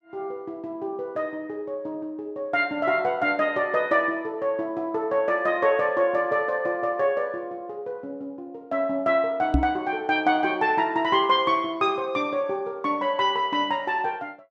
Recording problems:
knock on the microphone; at 9.5 s; peak +6 dB vs average level

